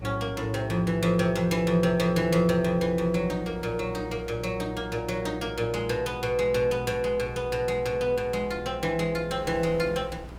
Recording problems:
electrical hum; 60 Hz, harmonics up to 480 Hz, SNR 18 dB
wind noise; below 970 Hz, SNR 23 dB

